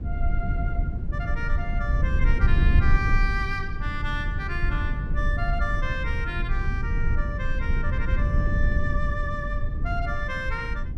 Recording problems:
low-frequency rumble; below 78 Hz, SNR -5 dB

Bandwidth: 14.5 kHz